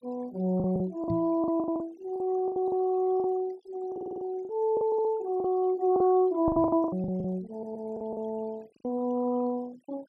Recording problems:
noise reduction artefacts; signal-to-artefact ratio 25 dB
lost packets; 13% of the sound replaced, filled with the last packet
knock on the microphone; at 1 s and at 6.5 s; peak -1 dB vs average level
audio stuttering; at 4 s, at 5 s and at 7.5 s

